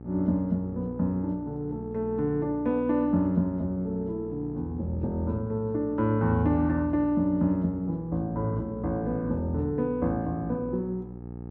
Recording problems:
electrical hum; 60 Hz, harmonics up to 900 Hz, SNR 13 dB

